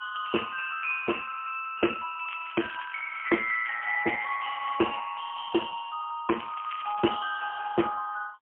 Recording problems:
phone line; 260 Hz to 3.1 kHz, AMR-NB, then MP3
crackle; from 2.5 to 5 s and at 6.5 s; loose cable, SNR 15 dB

